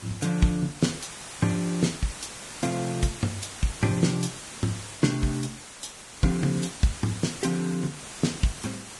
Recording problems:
codec artefacts; Vorbis, log-spectral distance 13 dB, nothing above 10.7 kHz
background hiss; slope -1 dB per octave, SNR 11 dB

